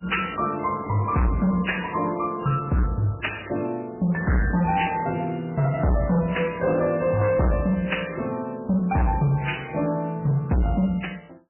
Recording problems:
lossy codec; MP3, log-spectral distance 4 dB, nothing above 3 kHz
distorted audio; hard clipping, signal-to-distortion ratio 7 dB

